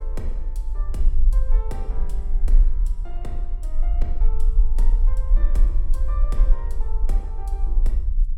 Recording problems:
rumble; below 38 Hz, strongest tone 22 Hz, SNR -15 dB

